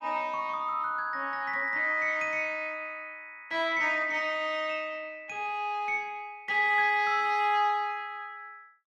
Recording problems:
none

